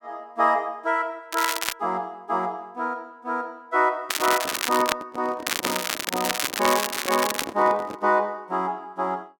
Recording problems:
crackle; at 1.5 s, at 4 s and from 5.5 to 7.5 s; loose cable, SNR 2 dB
microphone handling noise; from 4 to 8 s; peak -3 dB vs average level

